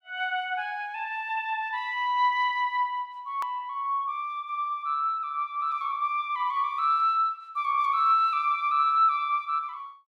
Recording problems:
edit click; at 3.5 s

